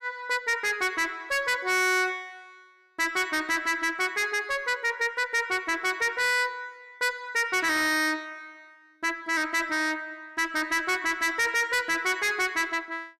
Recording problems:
distortion; hard clipping, signal-to-distortion ratio 6 dB

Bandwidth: 15 kHz